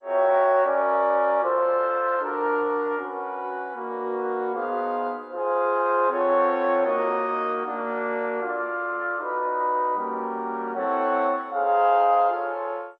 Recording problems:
lossy compression; MP2, then MP2, log-spectral distance 2 dB

